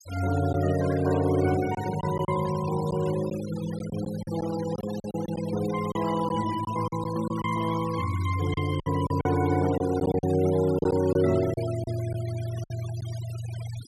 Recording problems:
denoising artefacts; signal-to-artefact ratio 15 dB
lost packets; 7% of the sound replaced, filled with silence

